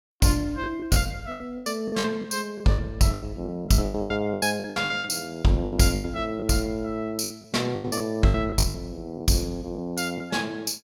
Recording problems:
packet loss; 16% of the sound replaced, filled with the last packet

